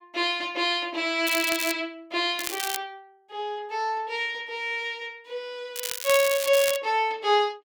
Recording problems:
crackle; at 1.5 s, at 2.5 s and from 6 to 7 s; loose cable, SNR 6 dB

